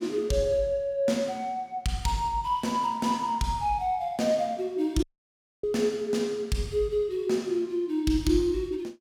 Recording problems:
audio cutting out; at 5 s for 0.5 s

